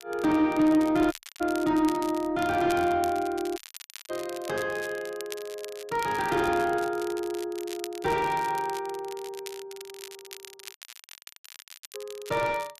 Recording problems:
distorted audio; soft clipping, signal-to-distortion ratio 9 dB
crackle; vinyl, SNR 16 dB
dropout; at 1 s, at 3.5 s for 0.5 s and at 11 s for 1 s

